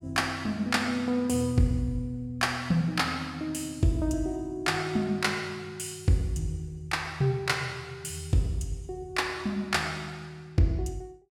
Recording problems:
none

